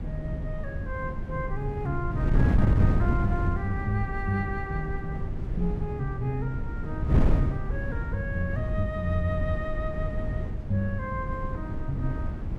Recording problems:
wind on the microphone; below 140 Hz, SNR -2 dB

